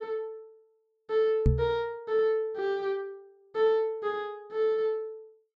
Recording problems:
knock on the microphone; at 1.5 s; peak +8 dB vs average level

